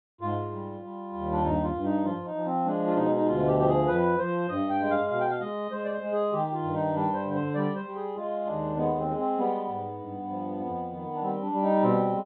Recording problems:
treble cut off; nothing above 4 kHz

